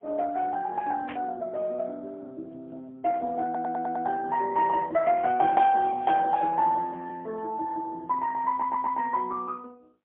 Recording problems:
phone line; 280 Hz to 3.1 kHz, AMR-NB, then MP3
static burst; at 1 s and at 6 s; peak -8 dB vs average level
stutter; at 3.5 s and at 8.5 s

